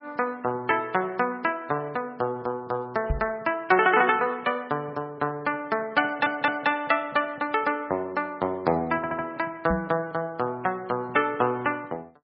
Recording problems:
lossy codec; MP3, log-spectral distance 2 dB, nothing above 5.3 kHz
knock on the microphone; at 3 s and at 9.5 s; peak +3 dB vs average level
audio stuttering; at 6 s and at 9 s

